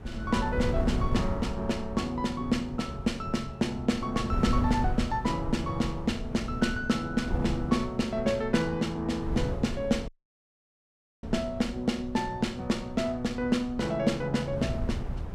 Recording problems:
wind on the microphone; below 150 Hz, SNR 7 dB
dropout; at 10 s for 1 s

